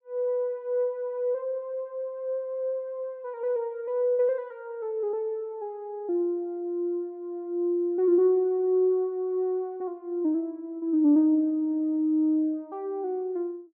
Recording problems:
none

